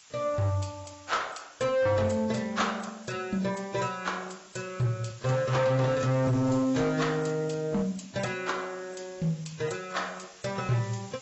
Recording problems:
lossy codec; AAC, log-spectral distance 12 dB, nothing above 7.8 kHz
distortion; hard clipping, signal-to-distortion ratio 10 dB
background hiss; SNR 21 dB

